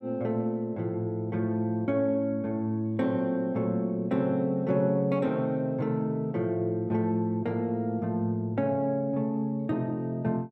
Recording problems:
none

